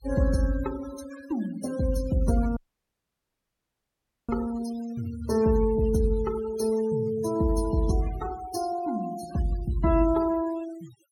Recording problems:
noise reduction artefacts; signal-to-artefact ratio 17 dB
dropout; at 2.5 s for 1.5 s

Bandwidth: 17 kHz